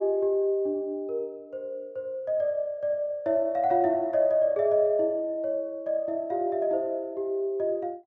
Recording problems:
none

